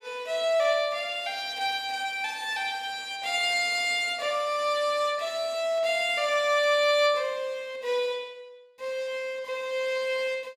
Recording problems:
none

